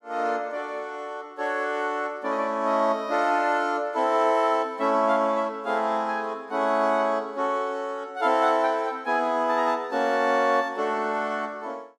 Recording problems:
none

